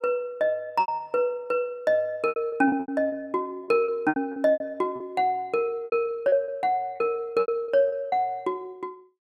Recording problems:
lost packets; 13% of the sound replaced, filled with repeated pitch periods

